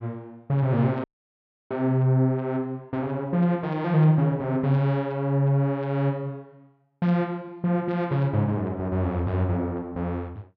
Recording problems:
dropout; at 1 s for 0.5 s

